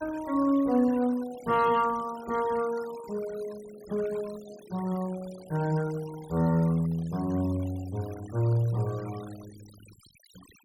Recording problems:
denoising artefacts; signal-to-artefact ratio 21 dB

